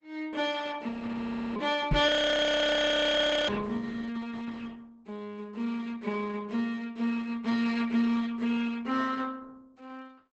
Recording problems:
codec artefacts; Opus, log-spectral distance 3 dB
audio freezing; at 1 s for 0.5 s and at 2 s for 1.5 s
knock on the microphone; at 2 s; peak +4 dB vs average level

